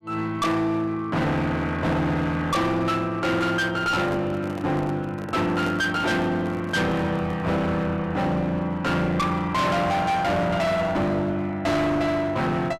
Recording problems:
distortion; hard clipping, uneven, signal-to-distortion ratio 6 dB
handling noise; from 4 to 7.5 s; peak -5 dB vs average level

